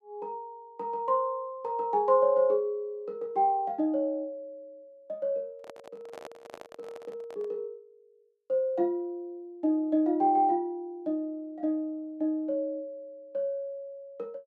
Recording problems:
handling noise; from 5.5 to 7.5 s; peak -9 dB vs average level

